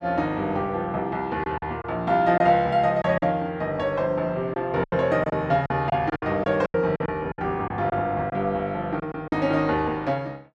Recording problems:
lost packets; 8% of the sound replaced, filled with silence

